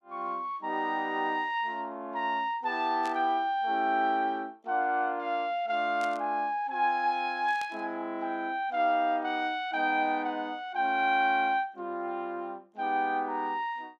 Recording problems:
static burst; at 3 s, at 6 s and at 7.5 s; peak -10 dB vs average level

